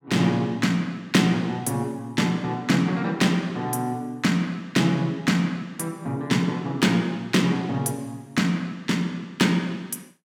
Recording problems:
none

